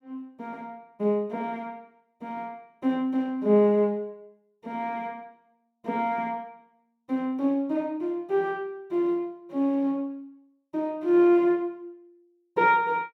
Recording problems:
none

